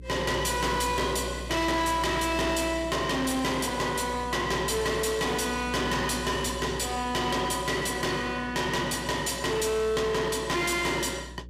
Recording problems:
distortion; hard clipping, uneven, signal-to-distortion ratio 6 dB
hum; 60 Hz, harmonics up to 540 Hz, SNR 15 dB

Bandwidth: 15 kHz